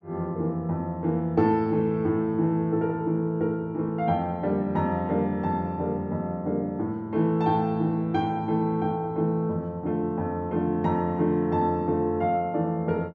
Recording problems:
none

